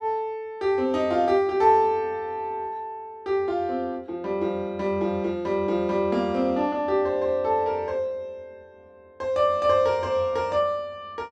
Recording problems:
none

